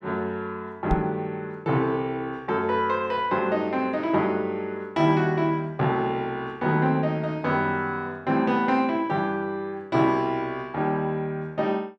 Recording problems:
knock on the microphone; at 1 s; peak +3 dB vs average level

